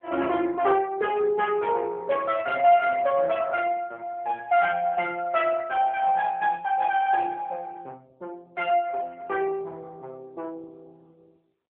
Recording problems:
phone line; 320 Hz to 3.1 kHz, AMR-NB

